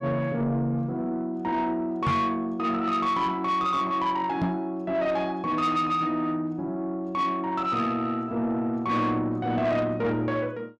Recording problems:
distortion; soft clipping, signal-to-distortion ratio 12 dB
knock on the microphone; at 2 s and at 4.5 s; peak +5 dB vs average level

